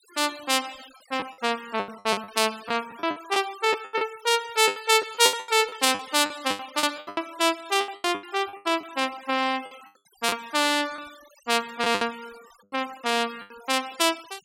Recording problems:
denoising artefacts; signal-to-artefact ratio 21 dB
packet loss; 14% of the sound replaced, filled with the last packet

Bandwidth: 16.5 kHz